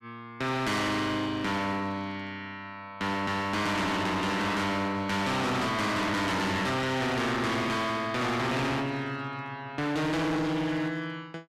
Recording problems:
distortion; hard clipping, uneven, signal-to-distortion ratio 6 dB

